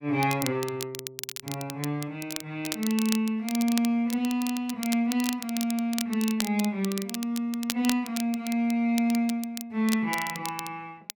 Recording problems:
crackling; vinyl, SNR 9 dB

